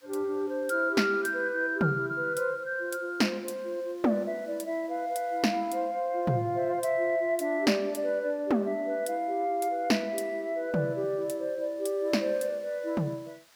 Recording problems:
hiss; slope +1 dB per octave, SNR 30 dB

